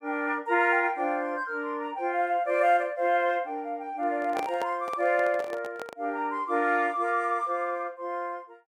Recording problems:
handling noise; from 4 to 6 s; peak -2 dB vs average level

